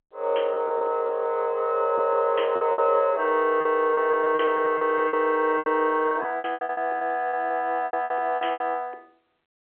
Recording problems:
phone line; 340 Hz to 3.3 kHz, G.711
packet loss; 13% of the sound replaced, filled with repeated pitch periods

